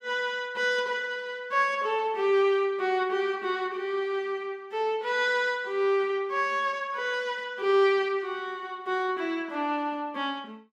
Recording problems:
none

